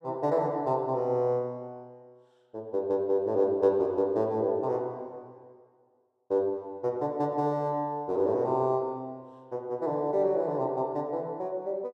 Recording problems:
none

